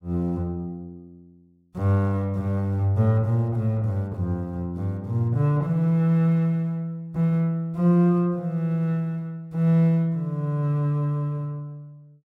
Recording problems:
none

